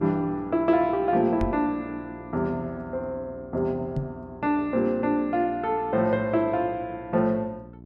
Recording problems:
electrical hum; 60 Hz, harmonics up to 720 Hz, SNR 20 dB
microphone thump; at 1.5 s and at 4 s; peak 0 dB vs average level

